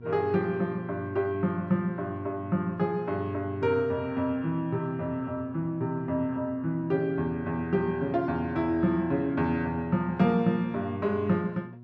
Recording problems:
hum; 60 Hz, harmonics up to 720 Hz, SNR 17 dB

